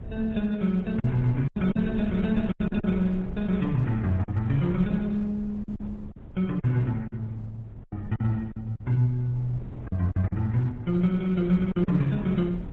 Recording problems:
lossy compression; AAC, then Opus, log-spectral distance 2 dB
wind on the microphone; below 190 Hz, SNR 14 dB
packet loss; 8% of the sound replaced, filled with silence

